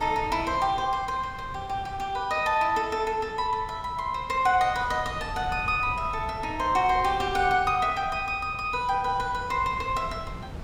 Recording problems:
wind noise; below 200 Hz, SNR 16 dB

